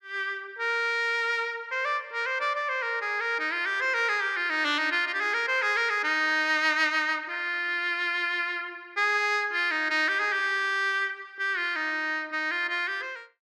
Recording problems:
none

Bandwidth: 14 kHz